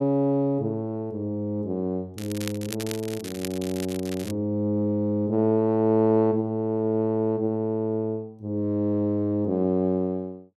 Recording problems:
crackling; from 2 to 4.5 s; loose cable, SNR 13 dB

